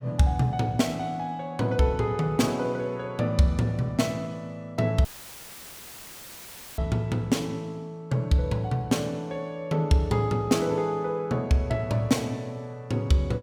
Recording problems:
audio cutting out; at 5 s for 1.5 s; filled with static

